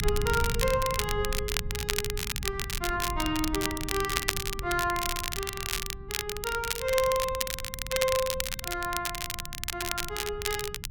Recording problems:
low-frequency rumble; below 110 Hz, SNR 8 dB
crackle; vinyl, SNR 1 dB

